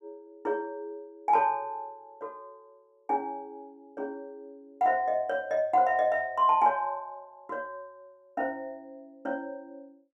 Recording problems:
none

